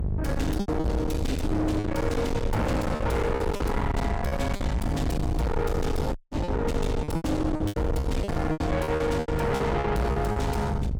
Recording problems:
distorted audio; soft clipping, signal-to-distortion ratio 6 dB
electrical hum; 50 Hz, harmonics up to 700 Hz, SNR 5 dB
low-frequency rumble; below 310 Hz, SNR 4 dB
lost packets; 11% of the sound replaced, filled with repeated pitch periods
audio cutting out; at 6 s

